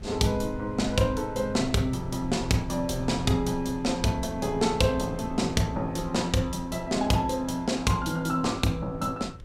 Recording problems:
wind on the microphone; below 110 Hz, SNR 15 dB

